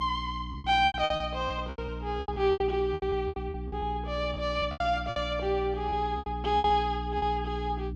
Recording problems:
hum; 60 Hz, harmonics up to 300 Hz, SNR 9 dB
packet loss; 16% of the sound replaced, filled with repeated pitch periods

